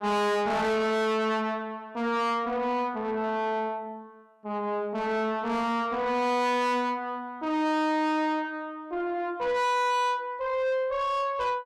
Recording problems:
distortion; soft clipping, signal-to-distortion ratio 7 dB

